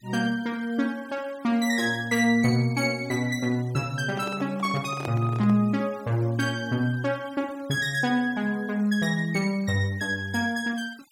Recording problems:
denoising artefacts; signal-to-artefact ratio 26 dB
microphone handling noise; from 4 to 5.5 s; peak -4 dB vs average level

